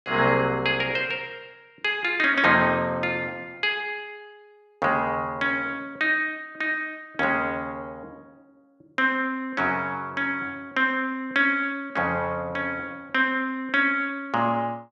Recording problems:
none

